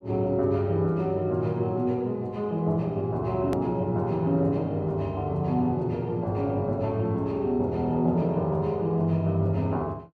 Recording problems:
hard cut with a click; at 3.5 s

